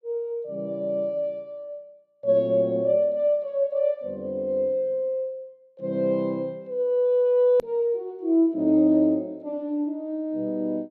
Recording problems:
click at an edit; at 7.5 s

